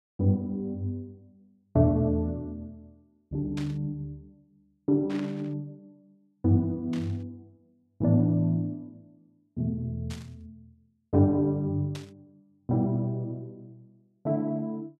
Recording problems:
burst of static; 5 times, first at 3.5 s; peak -10 dB vs average level

